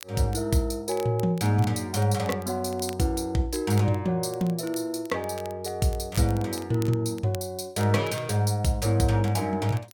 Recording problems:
crackling; vinyl, SNR 21 dB

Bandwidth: 17.5 kHz